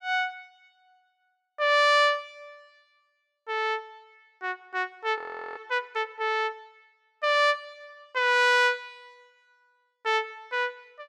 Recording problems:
audio freezing; at 5 s

